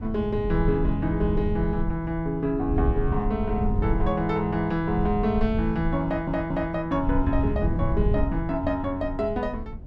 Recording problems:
low-frequency rumble; below 100 Hz, SNR 4 dB
audio stuttering; at 6 s

